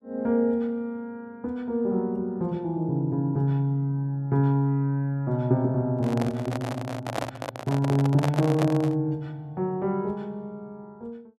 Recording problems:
microphone handling noise; from 6 to 9 s; peak +1 dB vs average level

